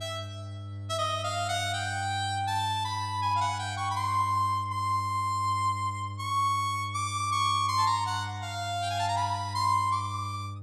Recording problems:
hum; 50 Hz, harmonics up to 600 Hz, SNR 10 dB

